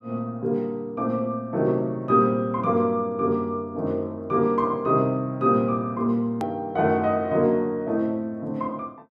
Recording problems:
edit click; at 6.5 s

